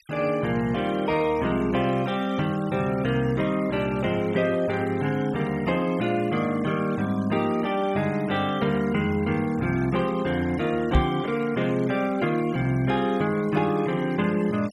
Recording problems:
noise reduction artefacts; signal-to-artefact ratio 20 dB
knock on the microphone; at 11 s; peak +7 dB vs average level

